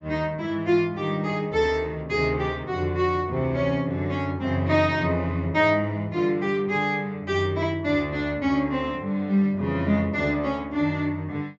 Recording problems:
low-pass filter; nothing above 8 kHz

